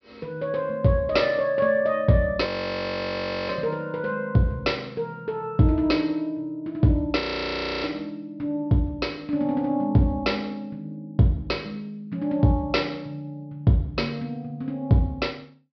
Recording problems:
treble missing; nothing above 5.5 kHz
frozen audio; at 2.5 s for 1 s and at 7 s for 0.5 s

